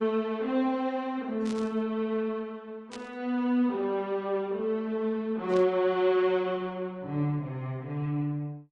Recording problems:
lossy codec; Opus, then AAC, log-spectral distance 2 dB
burst of static; at 1.5 s, at 3 s and at 5.5 s; peak -10 dB vs average level

